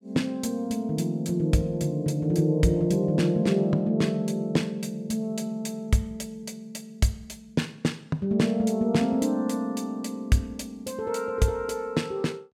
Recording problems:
none

